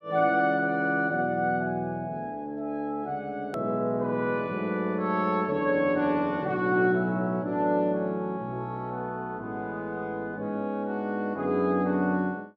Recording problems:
click at an edit; at 3.5 s

